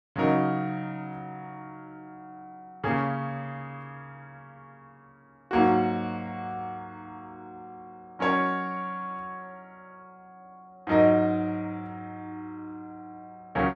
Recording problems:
none

